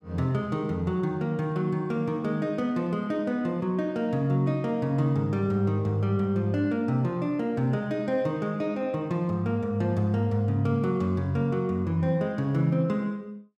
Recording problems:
none

